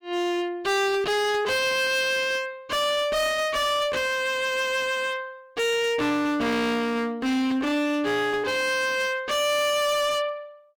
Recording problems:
distorted audio; hard clipping, uneven, signal-to-distortion ratio 5 dB

